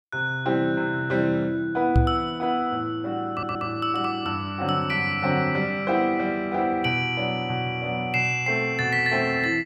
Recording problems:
microphone thump; at 2 s; peak +7 dB vs average level
stutter; at 3.5 s

